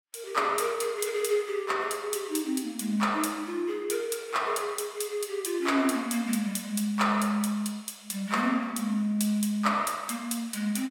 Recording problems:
none

